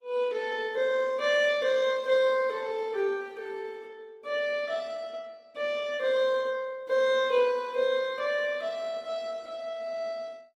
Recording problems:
codec artefacts; Opus, log-spectral distance 2 dB

